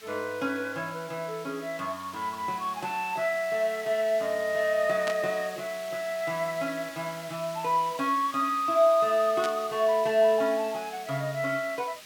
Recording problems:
background hiss; SNR 17 dB
burst of static; at 5 s and at 9.5 s; peak -3 dB vs average level

